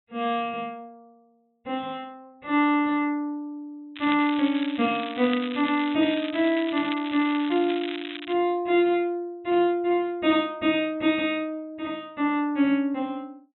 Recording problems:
treble cut off; nothing above 3.9 kHz
crackle; from 4 to 6 s and from 6 to 8.5 s; loose cable, SNR 12 dB

